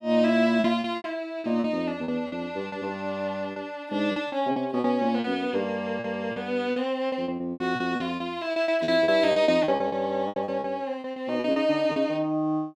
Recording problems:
packet loss; 14% of the sound replaced, filled with repeated pitch periods

